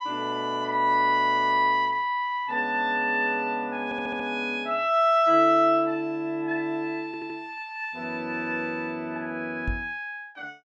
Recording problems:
stutter; at 4 s and at 7 s
microphone bump; at 9.5 s; peak -2 dB vs average level

